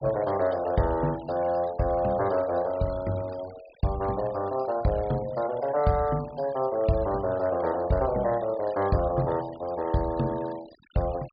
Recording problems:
treble missing; nothing above 4.6 kHz
denoising artefacts; signal-to-artefact ratio 20 dB

